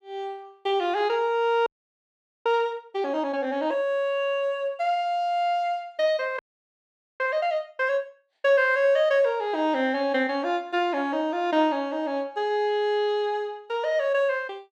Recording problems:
audio freezing; at 1.5 s for 1 s and at 6.5 s for 1 s

